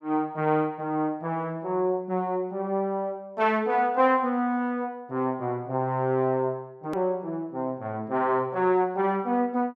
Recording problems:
hard cut with a click; at 7 s

